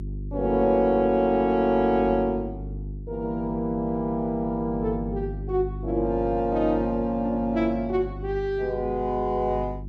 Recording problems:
electrical hum; 50 Hz, harmonics up to 400 Hz, SNR 12 dB

